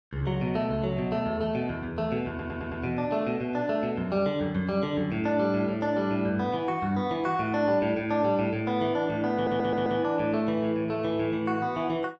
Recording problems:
stutter; at 2.5 s and at 9.5 s

